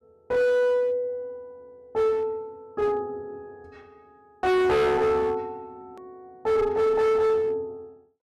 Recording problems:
distorted audio; hard clipping, uneven, signal-to-distortion ratio 7 dB
click at an edit; at 6 s

